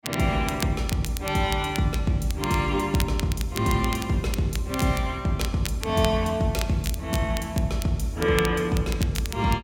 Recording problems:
crackle; vinyl, SNR 12 dB

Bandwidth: 16.5 kHz